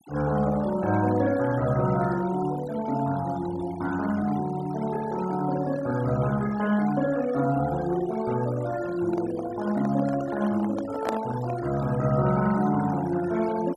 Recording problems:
denoising artefacts; signal-to-artefact ratio 16 dB
handling noise; from 9 to 12 s; peak +1 dB vs average level

